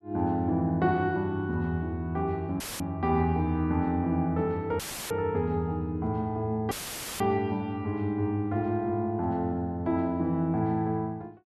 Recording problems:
audio cutting out; at 2.5 s, at 5 s and at 6.5 s; filled with static

